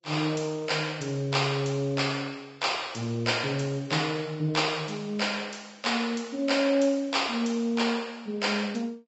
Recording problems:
low-pass filter; nothing above 7.7 kHz
lossy codec; Vorbis, log-spectral distance 4 dB

